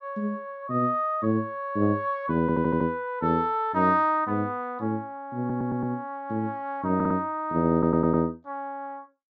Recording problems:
treble cut off; nothing above 7.9 kHz
stutter; 4 times, first at 2.5 s

